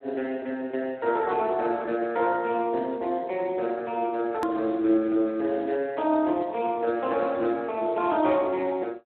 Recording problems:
phone line; 240 Hz to 3.7 kHz, Speex
edit click; at 4.5 s

